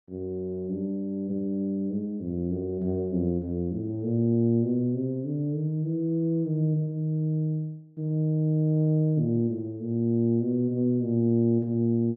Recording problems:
none

